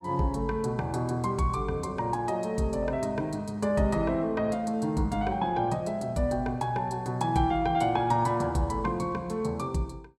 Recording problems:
none

